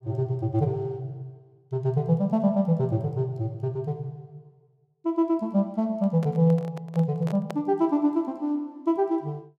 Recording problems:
microphone handling noise; from 6 to 7.5 s; peak -6 dB vs average level

